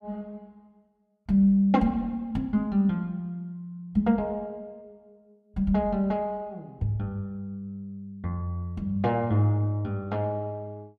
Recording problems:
none

